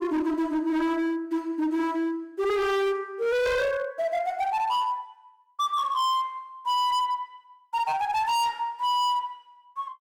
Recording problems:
distorted audio; hard clipping, signal-to-distortion ratio 6 dB

